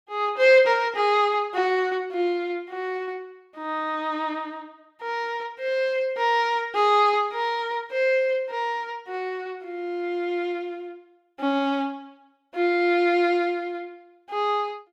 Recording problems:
none

